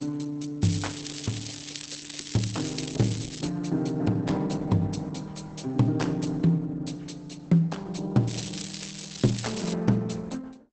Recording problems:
lossy compression; Opus, log-spectral distance 9 dB, nothing above 8 kHz
crackle; from 0.5 to 3.5 s and from 8.5 to 9.5 s; loose cable, SNR 9 dB

